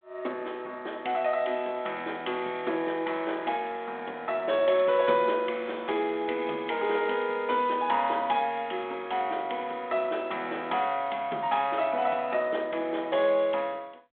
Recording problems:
telephone audio; 280 Hz to 3.6 kHz, G.726

